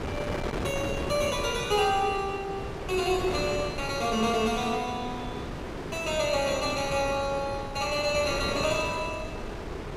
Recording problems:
wind noise; below 830 Hz, SNR 7 dB

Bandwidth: 15.5 kHz